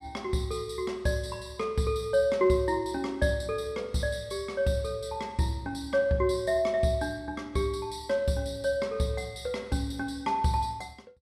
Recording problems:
none

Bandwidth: 13.5 kHz